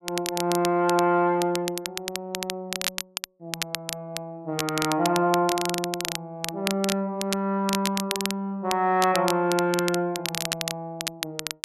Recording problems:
crackle; vinyl, SNR 6 dB

